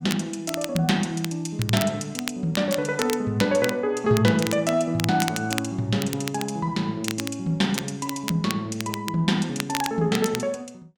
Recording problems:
crackling; vinyl, SNR 9 dB

